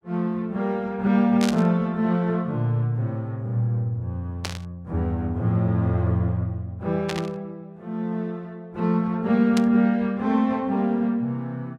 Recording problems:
burst of static; 4 times, first at 1.5 s; peak -1 dB vs average level

